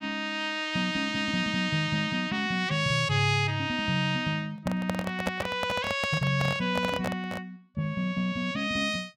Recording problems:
microphone handling noise; from 4.5 to 7.5 s; peak +2 dB vs average level

